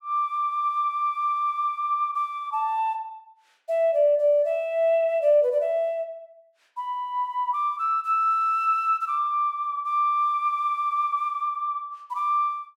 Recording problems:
none

